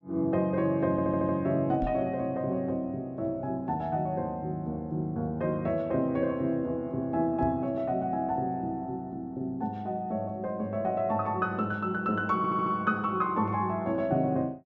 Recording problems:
treble cut off; nothing above 8 kHz
stutter; at 1 s and at 12 s
microphone thump; at 2 s and at 7.5 s; peak -3 dB vs average level

